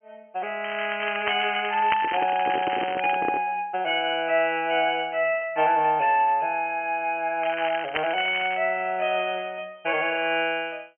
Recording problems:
low-pass filter; nothing above 3.2 kHz
crackle; from 0.5 to 3 s and from 7.5 to 8.5 s; loose cable, SNR 9 dB
handling noise; from 2 to 3.5 s; peak -1 dB vs average level

